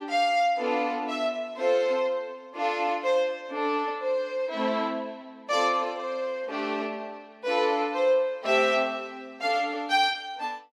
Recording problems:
none

